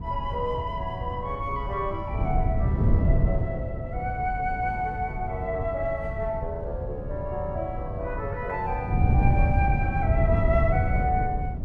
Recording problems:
wind on the microphone; below 140 Hz, SNR -2 dB

